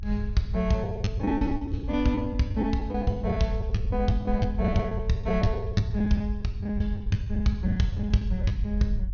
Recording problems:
low-pass filter; nothing above 6.6 kHz
low-frequency rumble; below 72 Hz, SNR 6 dB
lost packets; 13% of the sound replaced, filled with the last packet

